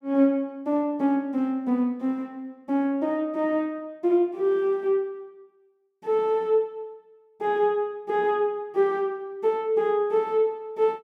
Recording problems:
none

